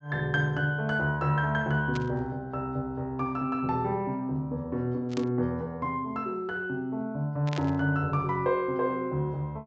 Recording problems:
treble cut off; nothing above 8 kHz
burst of static; at 2 s, at 5 s and at 7.5 s; peak -5 dB vs average level

